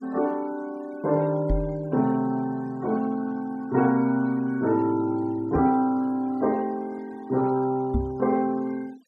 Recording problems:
noise reduction artefacts; signal-to-artefact ratio 26 dB
knock on the microphone; at 1.5 s, at 5.5 s and at 8 s; peak +3 dB vs average level

